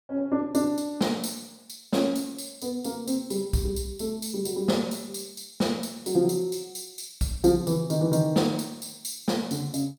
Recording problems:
none

